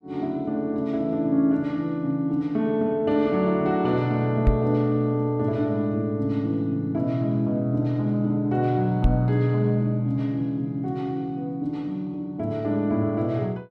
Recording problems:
microphone thump; at 4.5 s and at 9 s; peak +6 dB vs average level

